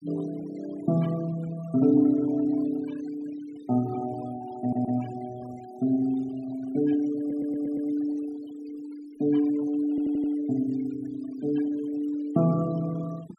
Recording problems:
denoising artefacts; signal-to-artefact ratio 20 dB
audio stuttering; at 4.5 s, at 7 s and at 10 s

